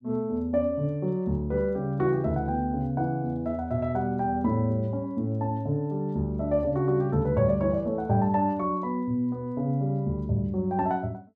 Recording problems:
none

